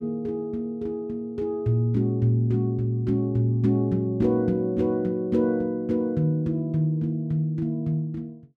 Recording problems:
none

